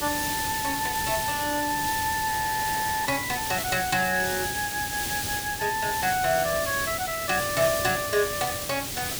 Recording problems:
hiss; SNR 3 dB
audio freezing; at 2.5 s for 1 s

